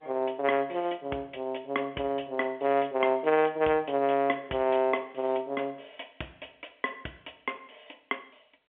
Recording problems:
phone line; 280 Hz to 3.2 kHz, G.711

